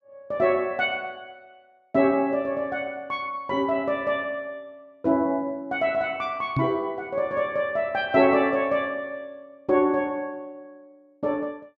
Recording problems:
knock on the microphone; at 6.5 s; peak +3 dB vs average level

